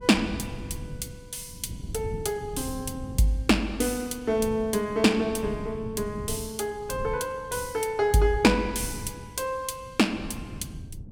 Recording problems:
wind noise; below 170 Hz, SNR 13 dB

